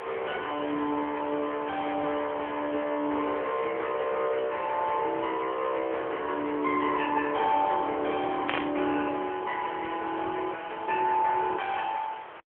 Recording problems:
phone line; 320 Hz to 3.5 kHz, AMR-NB
background hiss; SNR 14 dB
static burst; at 8.5 s; peak +2 dB vs average level

